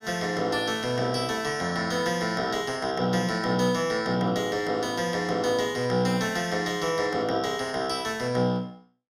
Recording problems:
none

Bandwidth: 15.5 kHz